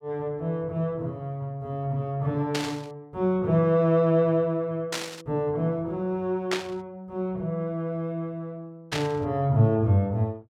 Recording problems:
burst of static; 4 times, first at 2.5 s; peak +2 dB vs average level

